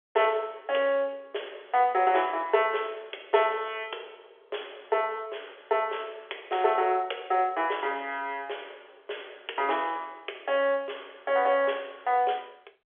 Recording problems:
phone line; 340 Hz to 3.4 kHz, G.711

